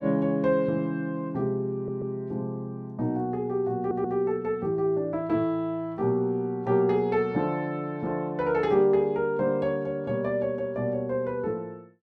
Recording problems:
audio stuttering; at 1.5 s and at 4 s

